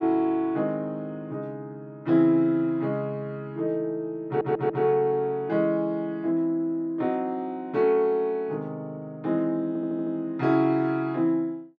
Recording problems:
stutter; at 4.5 s and at 9.5 s

